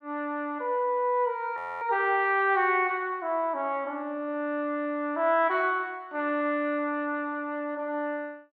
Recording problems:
audio freezing; at 1.5 s

